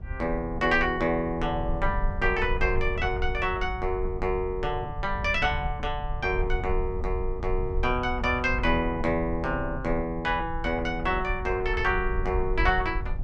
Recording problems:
low-frequency rumble; below 66 Hz, SNR 7 dB

